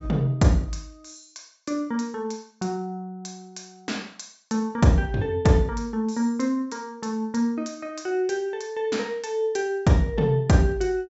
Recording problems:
treble missing; nothing above 8 kHz

